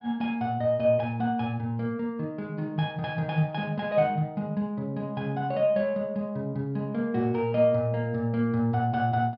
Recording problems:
low-pass filter; nothing above 5.5 kHz

